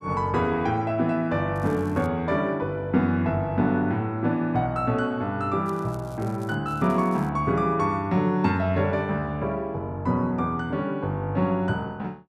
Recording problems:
crackling; at 1.5 s, at 5.5 s and at 6.5 s; loose cable, SNR 28 dB

